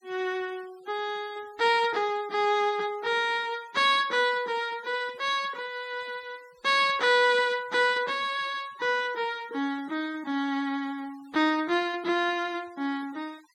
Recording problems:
noise reduction artefacts; signal-to-artefact ratio 25 dB

